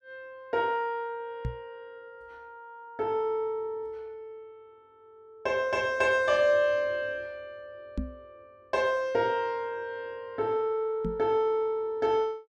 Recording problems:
microphone thump; at 1.5 s, at 8 s and at 11 s; peak 0 dB vs average level

